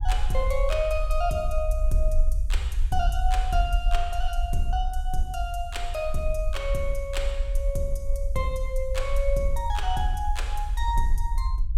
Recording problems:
rumble; below 50 Hz, strongest tone 22 Hz, SNR -1 dB

